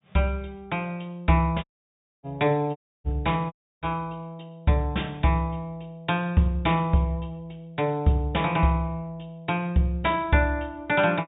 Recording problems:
treble missing; nothing above 4 kHz
audio cutting out; at 1.5 s for 0.5 s, at 3 s and at 3.5 s

